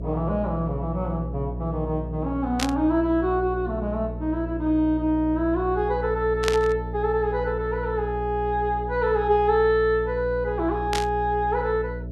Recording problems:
hum; 60 Hz, harmonics up to 660 Hz, SNR 8 dB
static burst; at 2.5 s, at 6.5 s and at 11 s; peak +2 dB vs average level

